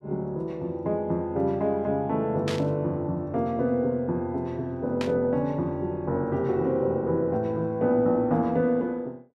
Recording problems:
burst of static; at 2.5 s and at 5 s; peak -3 dB vs average level

